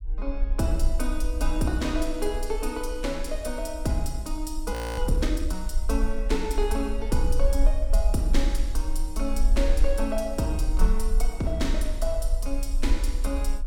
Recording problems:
rumble; below 42 Hz, strongest tone 20 Hz, SNR 0 dB
frozen audio; at 4.5 s

